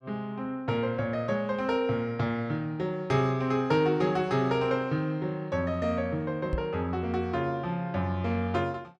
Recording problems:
microphone thump; at 6.5 s; peak +1 dB vs average level

